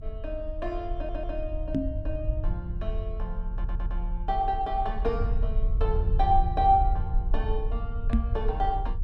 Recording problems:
low-frequency rumble; below 64 Hz, SNR 1 dB
audio stuttering; at 1 s and at 3.5 s
knock on the microphone; at 2 s and at 8 s; peak +9 dB vs average level

